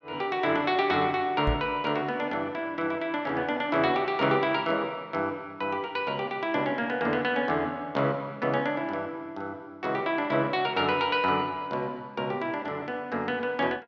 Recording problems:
microphone bump; at 1.5 s; peak +3 dB vs average level

